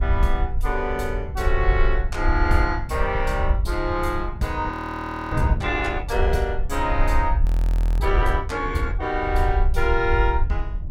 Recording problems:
low-frequency rumble; below 60 Hz, SNR 1 dB
wind on the microphone; below 110 Hz, SNR 9 dB
frozen audio; at 4.5 s for 0.5 s and at 7.5 s for 0.5 s

